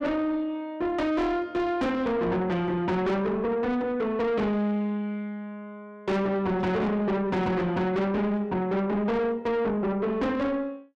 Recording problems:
distorted audio; soft clipping, signal-to-distortion ratio 7 dB

